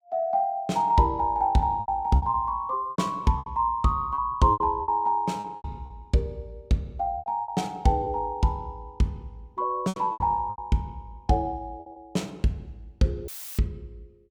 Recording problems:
lost packets; 10% of the sound replaced, filled with repeated pitch periods
dropout; at 13 s; filled with static

